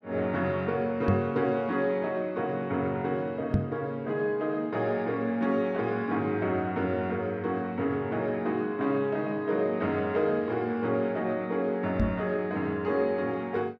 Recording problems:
knock on the microphone; at 1 s, at 3.5 s and at 12 s; peak +7 dB vs average level

